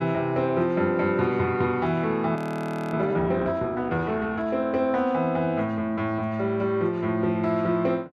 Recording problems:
audio freezing; at 2.5 s for 0.5 s

